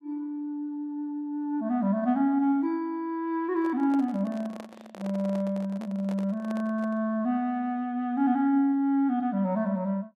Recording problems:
microphone handling noise; from 3.5 to 7 s; peak -10 dB vs average level

